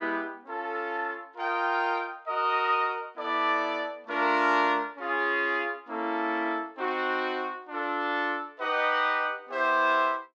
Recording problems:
none

